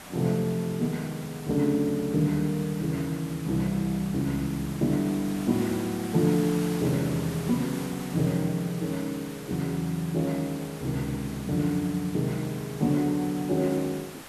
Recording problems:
background hiss; slope -3 dB per octave, SNR 14 dB

